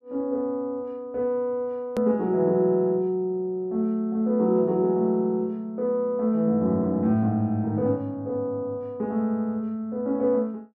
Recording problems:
hard cut with a click; at 2 s

